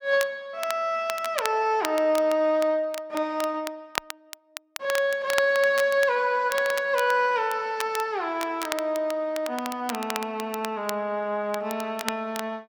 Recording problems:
crackle; vinyl, SNR 11 dB

